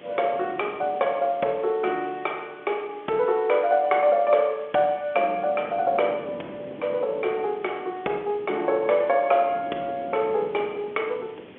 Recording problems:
telephone audio; 300 Hz to 3.6 kHz, G.711
hiss; SNR 27 dB
wind on the microphone; below 530 Hz, SNR 19 dB

